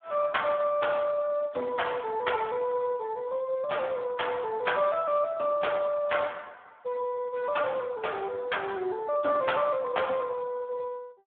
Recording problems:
phone line; 280 Hz to 3.5 kHz, Speex

